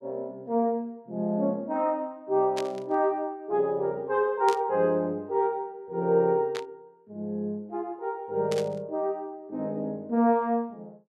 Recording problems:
static burst; 4 times, first at 2.5 s; peak -4 dB vs average level

